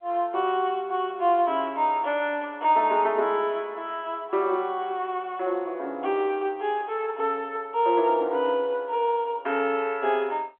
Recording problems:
telephone audio; 320 Hz to 3.4 kHz, G.711

